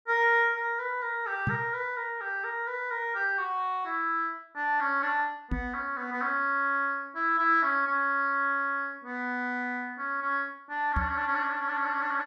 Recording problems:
knock on the microphone; at 1.5 s, at 5.5 s and at 11 s; peak +2 dB vs average level

